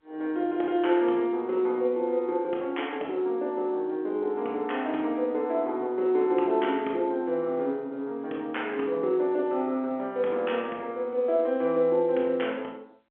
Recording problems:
phone line; 280 Hz to 3.3 kHz, G.711

